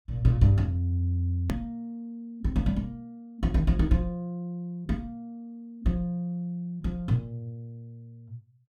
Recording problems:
hard cut with a click; at 1.5 s

